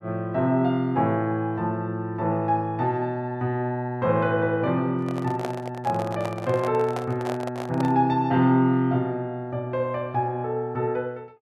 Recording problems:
handling noise; from 5 to 8 s; peak -3 dB vs average level

